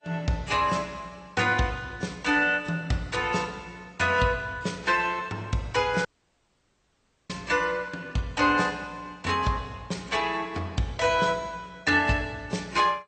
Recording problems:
lossy codec; AAC, then MP2, log-spectral distance 4 dB, nothing above 8.5 kHz
audio cutting out; at 6 s for 1.5 s

